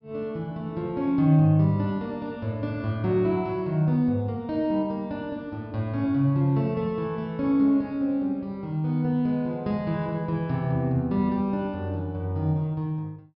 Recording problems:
treble cut off; nothing above 5.5 kHz

